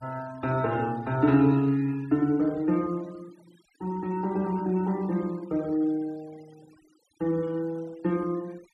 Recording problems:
noise reduction artefacts; signal-to-artefact ratio 25 dB

